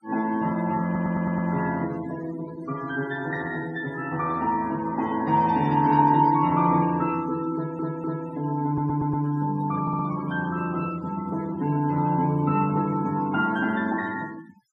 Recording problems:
denoising artefacts; signal-to-artefact ratio 19 dB
stutter; 4 times, first at 1 s

